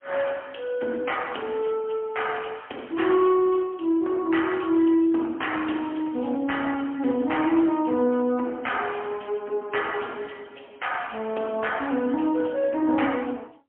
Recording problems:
telephone audio; 190 Hz to 3.2 kHz, AMR-NB, then MP3

